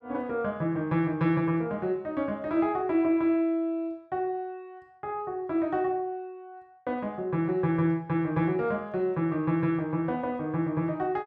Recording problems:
none

